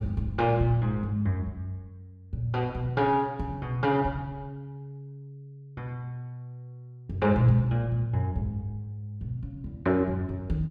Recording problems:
none

